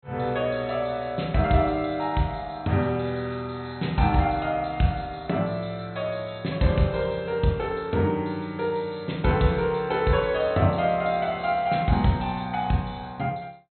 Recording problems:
treble cut off; nothing above 4.2 kHz

